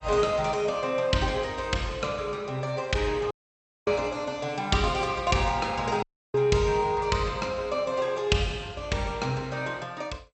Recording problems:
lossy codec; MP2, log-spectral distance 2 dB, nothing above 8 kHz
dropout; at 3.5 s for 0.5 s and at 6 s

